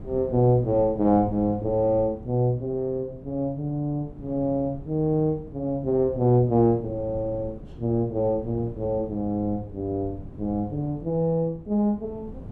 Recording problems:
wind noise; below 220 Hz, SNR 17 dB

